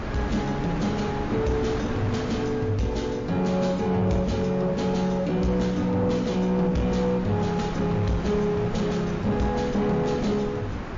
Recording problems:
codec artefacts; MP3, log-spectral distance 2 dB, nothing above 6.5 kHz
distorted audio; soft clipping, signal-to-distortion ratio 11 dB
hum; 50 Hz, harmonics up to 300 Hz, SNR 21 dB
wind noise; below 910 Hz, SNR 9 dB

